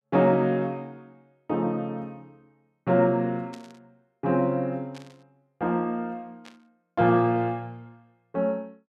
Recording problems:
static burst; at 3.5 s, at 5 s and at 6.5 s; peak -16 dB vs average level

